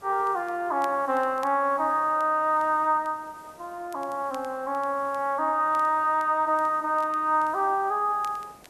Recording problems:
background hiss; SNR 27 dB
crackle; vinyl, SNR 29 dB

